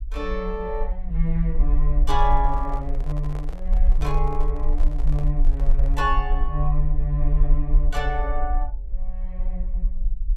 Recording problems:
low-frequency rumble; below 42 Hz, strongest tone 22 Hz, SNR -3 dB
microphone handling noise; from 2 to 6 s; peak -8 dB vs average level

